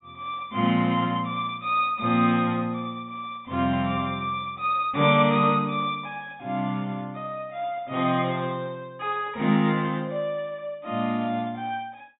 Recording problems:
treble cut off; nothing above 4 kHz

